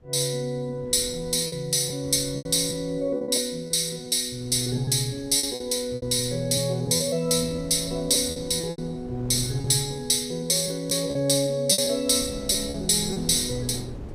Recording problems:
wind noise; below 310 Hz, SNR 19 dB
packet loss; 8% of the sound replaced, filled with repeated pitch periods

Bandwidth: 15 kHz